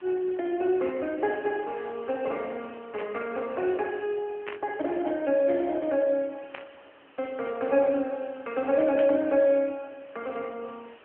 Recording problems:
phone line; 240 Hz to 3.1 kHz, AMR-NB
background hiss; SNR 25 dB
static burst; 4 times, first at 3 s; peak -5 dB vs average level

